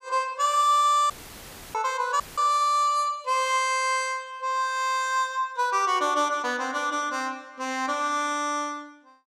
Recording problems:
audio cutting out; at 1 s for 0.5 s and at 2 s; filled with static

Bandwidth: 15 kHz